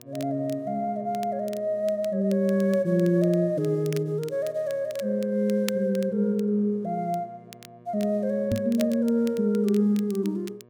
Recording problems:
mains hum; 60 Hz, harmonics up to 1.8 kHz, SNR 27 dB
crackling; vinyl, SNR 21 dB
microphone bump; at 8.5 s; peak +1 dB vs average level

